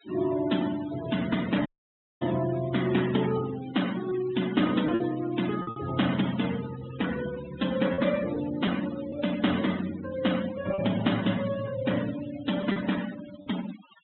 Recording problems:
low-pass filter; nothing above 3.9 kHz
denoising artefacts; signal-to-artefact ratio 13 dB
lost packets; 3% of the sound replaced, filled with repeated pitch periods
dropout; at 1.5 s for 0.5 s

